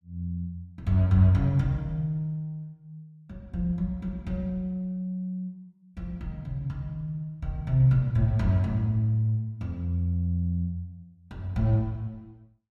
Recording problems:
none

